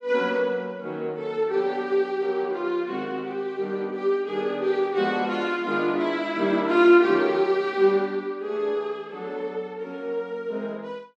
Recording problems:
none

